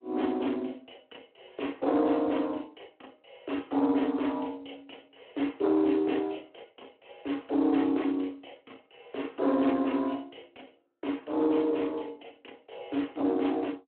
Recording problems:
telephone audio; 240 Hz to 3.3 kHz, Speex
distorted audio; soft clipping, signal-to-distortion ratio 12 dB

